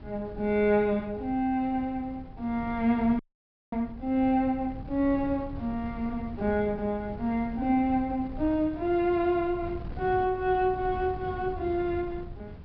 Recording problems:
low-pass filter; nothing above 5.5 kHz
wind noise; below 170 Hz, SNR 14 dB
audio freezing; at 3 s for 0.5 s

